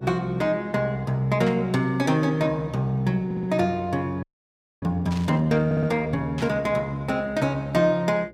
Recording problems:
hum; 60 Hz, harmonics up to 600 Hz, SNR 26 dB
burst of static; at 1.5 s, at 5 s and at 6.5 s; peak -8 dB vs average level
audio stuttering; at 3.5 s and at 5.5 s
audio freezing; at 4 s for 0.5 s

